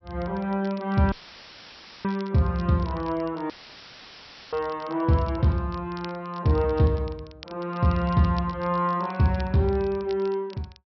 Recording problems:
treble cut off; nothing above 5.7 kHz
crackle; vinyl, SNR 24 dB
dropout; at 1 s for 1 s and at 3.5 s for 1 s; filled with static

